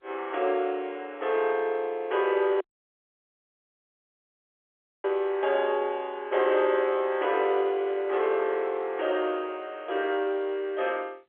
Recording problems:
telephone audio; 320 Hz to 3.4 kHz, G.711
dropout; at 2.5 s for 2.5 s

